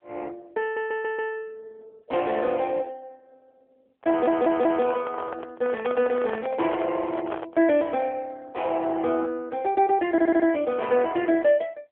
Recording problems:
telephone audio; 340 Hz to 3.5 kHz, AMR-NB
audio stuttering; at 0.5 s, at 4 s and at 10 s
microphone handling noise; from 4 to 7.5 s; peak -2 dB vs average level

